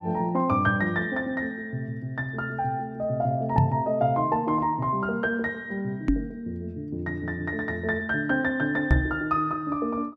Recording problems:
microphone thump; at 3.5 s, at 6 s and at 9 s; peak +9 dB vs average level

